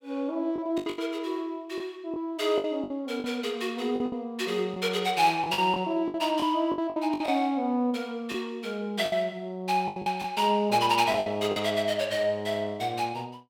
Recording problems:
packet loss; 9% of the sound replaced, filled with the last packet

